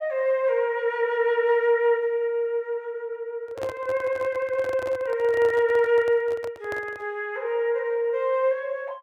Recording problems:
microphone handling noise; from 3.5 to 7 s; peak -7 dB vs average level

